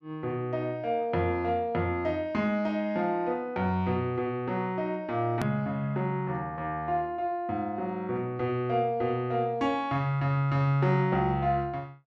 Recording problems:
edit click; at 5.5 s

